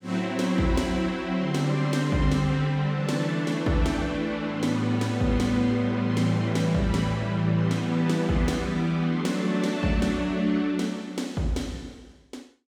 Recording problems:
none

